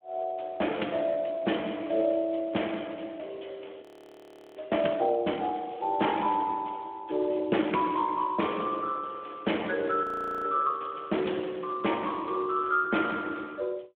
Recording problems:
phone line; 220 Hz to 3.4 kHz, Speex
audio freezing; at 4 s for 0.5 s and at 10 s

